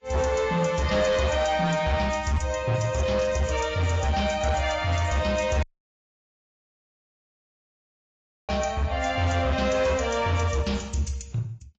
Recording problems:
lossy compression; AAC, log-spectral distance 3 dB, nothing above 7.3 kHz
distorted audio; hard clipping, uneven, signal-to-distortion ratio 12 dB
audio cutting out; at 5.5 s for 3 s

